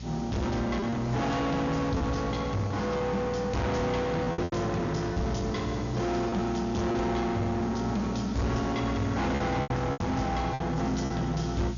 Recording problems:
treble missing; nothing above 6.9 kHz
distortion; soft clipping, signal-to-distortion ratio 7 dB
electrical hum; 60 Hz, harmonics up to 420 Hz, SNR 10 dB
hiss; slope +1 dB per octave, SNR 21 dB
packet loss; 5% of the sound replaced, filled with repeated pitch periods

